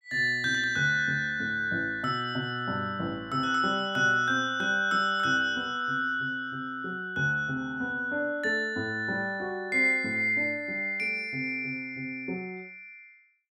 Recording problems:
none

